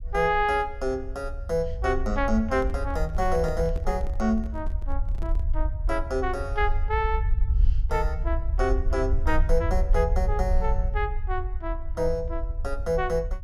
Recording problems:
rumble; below 62 Hz, SNR 2 dB
microphone handling noise; from 2.5 to 5.5 s; peak -9 dB vs average level

